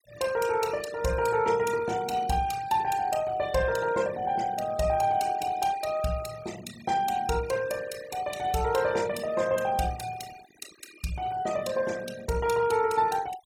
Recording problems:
denoising artefacts; signal-to-artefact ratio 16 dB

